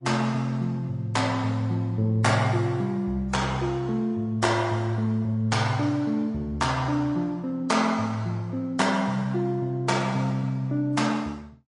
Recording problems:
lossy codec; MP3, then AAC, log-spectral distance 2 dB, nothing above 10.4 kHz

